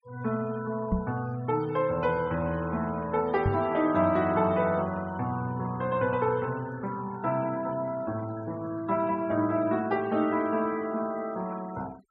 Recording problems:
denoising artefacts; signal-to-artefact ratio 22 dB
microphone bump; at 1 s and at 3.5 s; peak +4 dB vs average level

